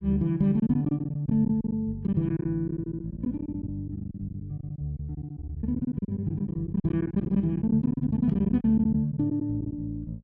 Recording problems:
lost packets; 14% of the sound replaced, filled with silence

